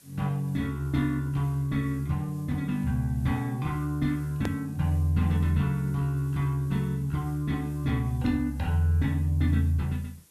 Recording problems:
hiss; SNR 27 dB
click at an edit; at 4.5 s

